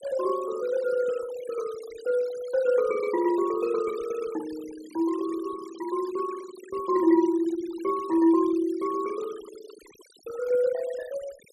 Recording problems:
noise reduction artefacts; signal-to-artefact ratio 20 dB

